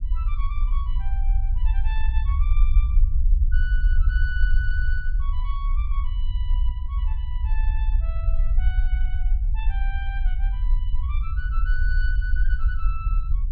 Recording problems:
rumble; below 50 Hz, SNR -13 dB

